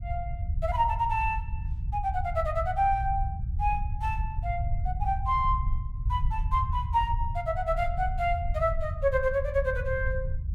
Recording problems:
low-frequency rumble; below 84 Hz, SNR 4 dB

